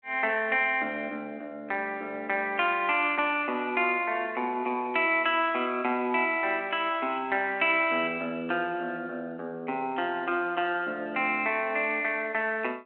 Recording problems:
phone line; 220 Hz to 3.3 kHz, G.726

